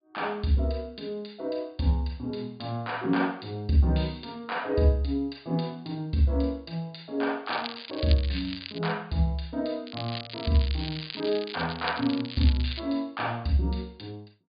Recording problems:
low-pass filter; nothing above 4.9 kHz
crackle; from 7.5 to 9 s and from 10 to 13 s; loose cable, SNR 10 dB

